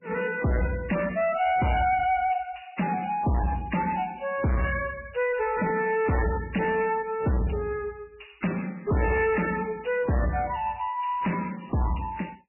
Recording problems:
lossy codec; MP3, log-spectral distance 8 dB, nothing above 2.4 kHz
distortion; soft clipping, signal-to-distortion ratio 7 dB

